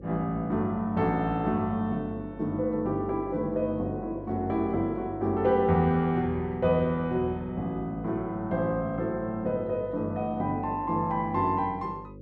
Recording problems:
hum; 50 Hz, harmonics up to 550 Hz, SNR 16 dB

